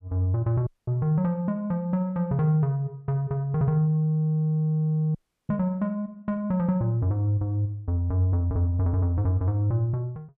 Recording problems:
dropout; at 0.5 s and at 5 s

